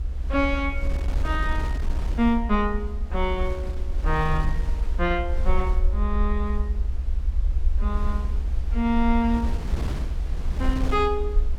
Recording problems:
low-frequency rumble; below 66 Hz, SNR 1 dB
wind noise; below 180 Hz, SNR 9 dB

